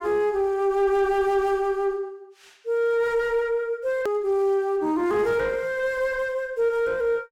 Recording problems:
distorted audio; soft clipping, signal-to-distortion ratio 9 dB
edit click; at 4 s

